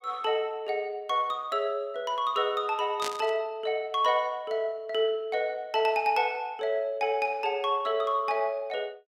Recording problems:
burst of static; at 3 s; peak -1 dB vs average level

